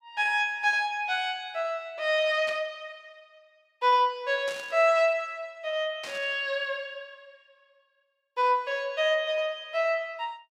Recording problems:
burst of static; at 2.5 s, at 4.5 s and at 6 s; peak -9 dB vs average level

